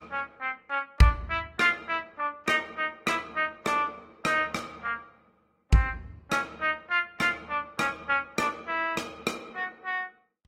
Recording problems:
lossy compression; Opus, then AAC, log-spectral distance 3 dB, nothing above 16 kHz

